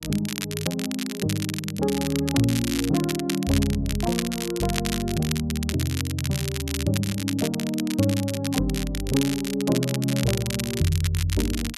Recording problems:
crackle; vinyl, SNR 6 dB

